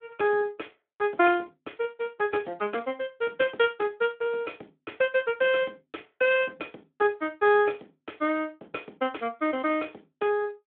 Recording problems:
telephone audio; 260 Hz to 3.4 kHz, Speex

